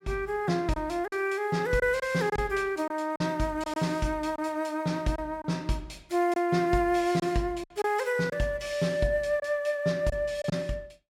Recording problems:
lost packets; 5% of the sound replaced, filled with silence

